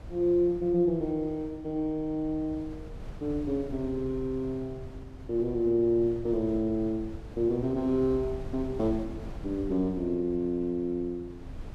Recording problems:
wind on the microphone; below 140 Hz, SNR 15 dB

